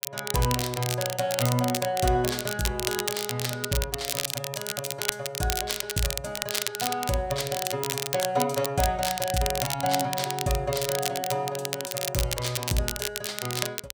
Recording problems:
crackling; vinyl, SNR 2 dB

